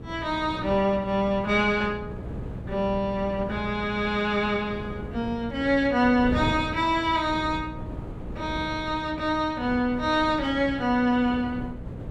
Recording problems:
hum; 60 Hz, harmonics up to 540 Hz, SNR 17 dB
wind noise; below 330 Hz, SNR 13 dB

